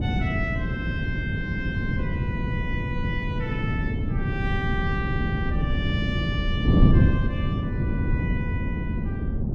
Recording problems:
wind noise; below 200 Hz, SNR -7 dB

